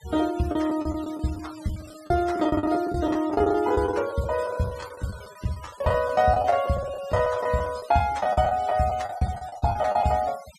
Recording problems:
noise reduction artefacts; signal-to-artefact ratio 19 dB
packet loss; 15% of the sound replaced, filled with the last packet

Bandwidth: 14 kHz